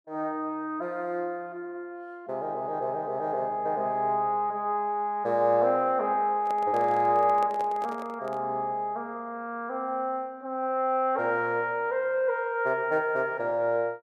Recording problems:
microphone handling noise; from 6.5 to 8.5 s; peak -7 dB vs average level

